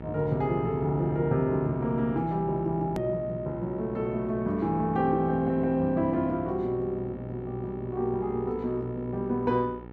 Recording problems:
hum; 60 Hz, harmonics up to 1.9 kHz, SNR 14 dB
edit click; at 3 s

